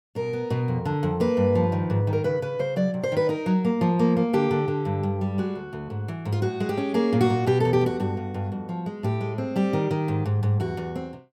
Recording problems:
none

